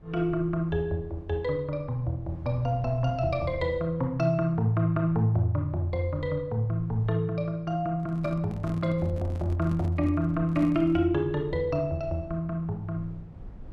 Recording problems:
low-frequency rumble; below 120 Hz, SNR 19 dB
microphone handling noise; from 8 to 11 s; peak -7 dB vs average level

